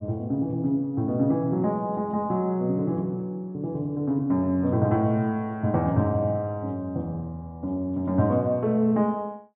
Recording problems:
treble missing; nothing above 3.9 kHz

